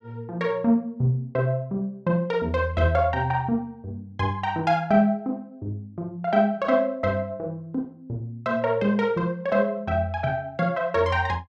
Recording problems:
none

